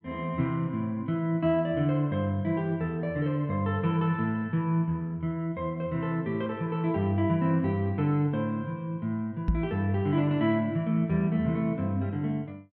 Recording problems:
microphone bump; at 9.5 s; peak +5 dB vs average level

